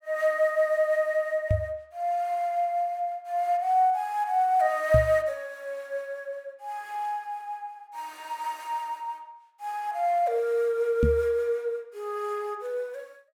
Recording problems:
knock on the microphone; at 1.5 s, at 5 s and at 11 s; peak +6 dB vs average level

